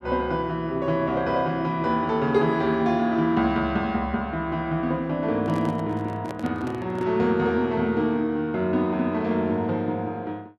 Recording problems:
handling noise; from 5.5 to 7 s; peak -8 dB vs average level

